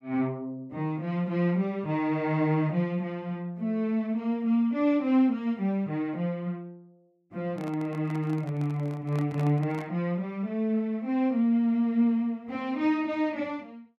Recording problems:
handling noise; from 7.5 to 10 s; peak -9 dB vs average level

